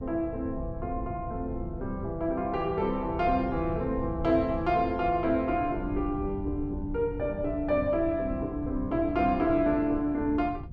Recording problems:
wind on the microphone; below 120 Hz, SNR 10 dB

